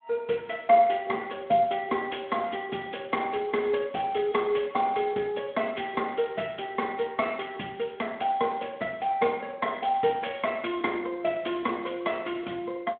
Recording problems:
telephone audio; 190 Hz to 3.5 kHz, Speex

